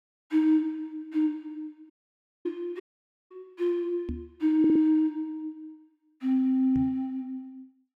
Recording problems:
dropout; at 2 s for 0.5 s and at 3 s for 0.5 s
microphone bump; at 2.5 s, at 4 s and at 7 s; peak -4 dB vs average level
audio stuttering; at 4.5 s

